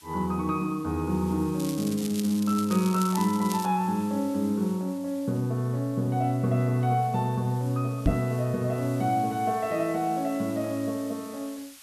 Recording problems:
hiss; slope +4 dB per octave, SNR 21 dB
crackling; from 1.5 to 3.5 s; loose cable, SNR 12 dB
microphone thump; at 8 s; peak +6 dB vs average level

